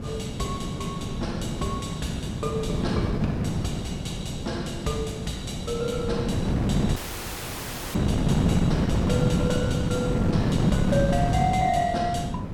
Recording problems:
wind noise; below 260 Hz, SNR -3 dB
dropout; at 7 s for 1 s

